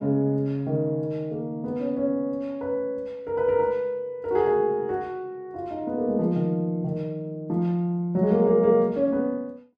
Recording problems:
none

